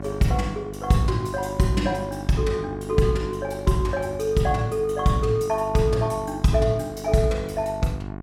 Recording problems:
hum; 50 Hz, harmonics up to 1.9 kHz, SNR 12 dB

